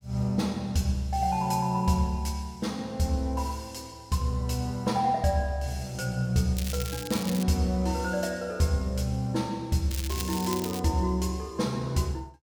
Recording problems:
crackling; at 6.5 s and at 10 s; loose cable, SNR 9 dB

